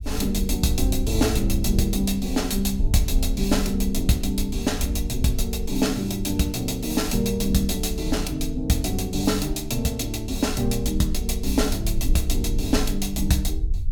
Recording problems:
low-frequency rumble; below 60 Hz, SNR 6 dB

